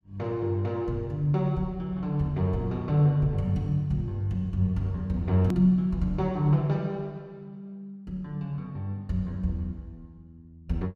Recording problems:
edit click; at 5.5 s

